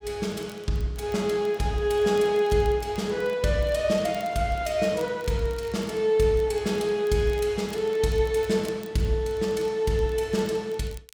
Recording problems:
crackling; vinyl, SNR 27 dB

